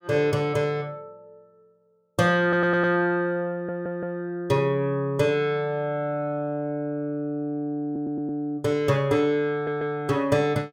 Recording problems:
audio stuttering; 4 times, first at 2.5 s

